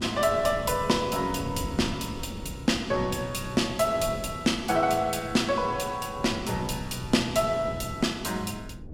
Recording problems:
wind noise; below 230 Hz, SNR 12 dB

